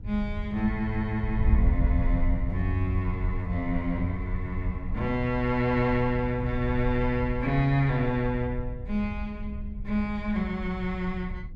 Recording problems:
wind on the microphone; below 80 Hz, SNR 4 dB

